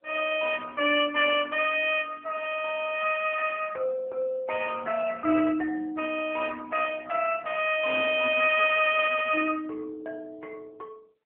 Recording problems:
telephone audio; 280 Hz to 3.1 kHz, AMR-NB

